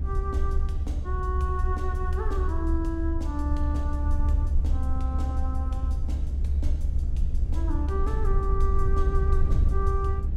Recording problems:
rumble; below 70 Hz, SNR -7 dB

